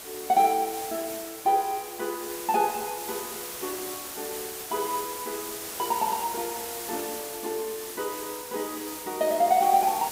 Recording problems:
hiss; slope -1 dB per octave, SNR 7 dB

